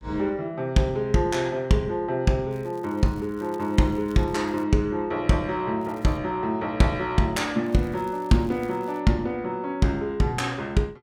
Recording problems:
crackle; from 2.5 to 4.5 s, at 6 s and from 7.5 to 9 s; loose cable, SNR 30 dB

